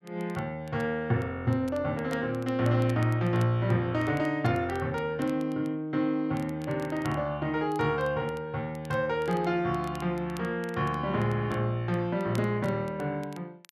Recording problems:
crackle; vinyl, SNR 25 dB

